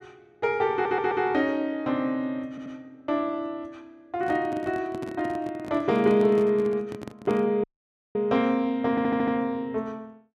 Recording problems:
audio stuttering; at 0.5 s, at 2.5 s and at 9 s
microphone handling noise; from 4 to 7.5 s; peak -6 dB vs average level
audio cutting out; at 7.5 s for 0.5 s

